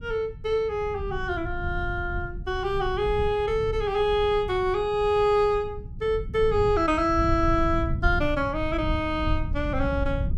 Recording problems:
rumble; below 100 Hz, SNR 8 dB

